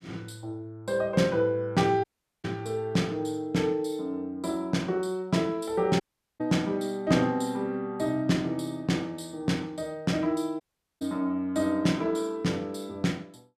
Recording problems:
dropout; at 2 s, at 6 s and at 11 s

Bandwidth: 14.5 kHz